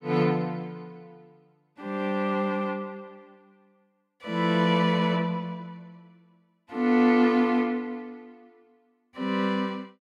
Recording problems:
none

